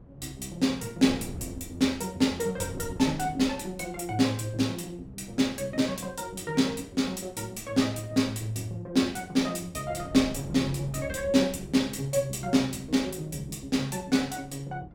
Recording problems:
wind noise; below 240 Hz, SNR 18 dB

